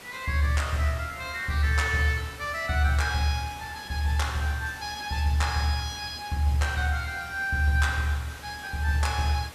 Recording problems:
hiss; slope -2 dB per octave, SNR 17 dB

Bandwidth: 14 kHz